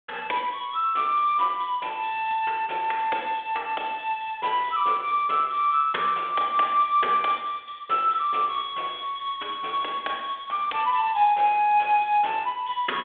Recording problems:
phone line; 320 Hz to 3.5 kHz, G.726

